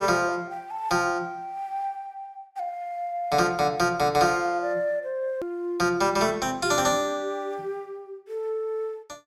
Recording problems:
edit click; at 5.5 s

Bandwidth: 16 kHz